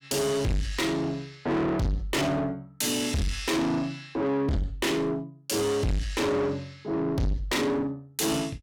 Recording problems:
distortion; soft clipping, signal-to-distortion ratio 6 dB

